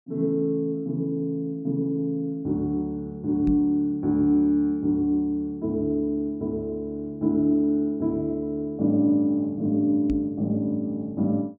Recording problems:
microphone thump; at 3.5 s and at 10 s; peak -2 dB vs average level

